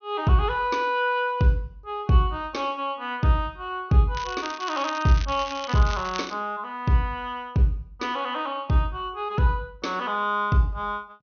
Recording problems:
treble missing; nothing above 6.4 kHz
crackling; from 4 to 6.5 s; loose cable, SNR 13 dB

